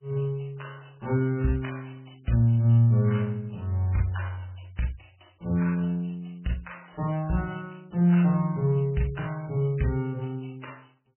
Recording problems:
codec artefacts; MP3, log-spectral distance 6 dB, nothing above 3 kHz

